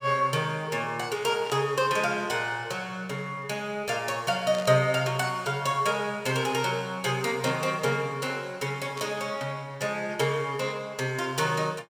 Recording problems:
burst of static; 4 times, first at 1.5 s; peak -8 dB vs average level

